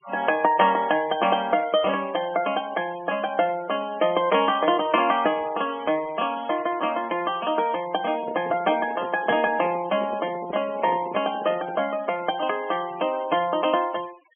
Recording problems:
low-pass filter; nothing above 3.3 kHz
denoising artefacts; signal-to-artefact ratio 19 dB
handling noise; from 8 to 12 s; peak -5 dB vs average level

